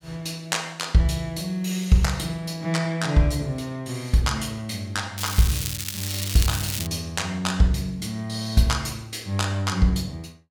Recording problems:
crackling; from 5 to 7 s; loose cable, SNR 5 dB

